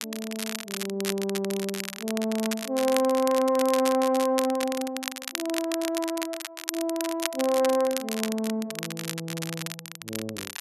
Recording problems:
crackle; vinyl, SNR 7 dB

